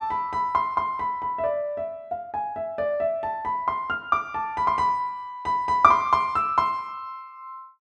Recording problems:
none

